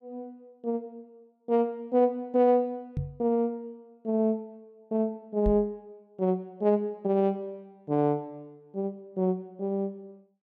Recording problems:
microphone thump; at 3 s and at 5.5 s; peak +1 dB vs average level

